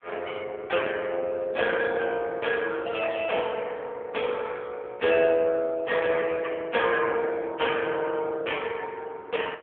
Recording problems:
telephone audio; 300 Hz to 3.5 kHz, AMR-NB

